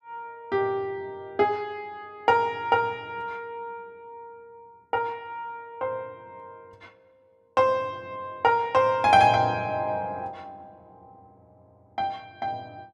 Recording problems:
none

